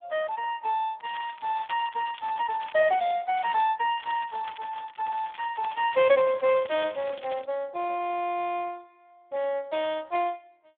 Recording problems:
telephone audio; 370 Hz to 3.5 kHz, Speex
crackle; from 1 to 3 s, at 3.5 s and from 4 to 7.5 s; loose cable, SNR 17 dB

